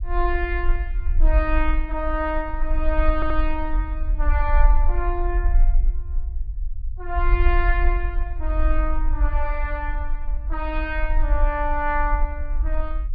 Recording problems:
treble missing; nothing above 5.5 kHz
low-frequency rumble; below 46 Hz, strongest tone 24 Hz, SNR -2 dB
stutter; at 3 s

